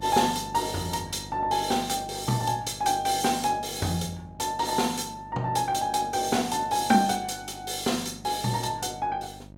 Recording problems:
mains hum; 50 Hz, harmonics up to 950 Hz, SNR 19 dB

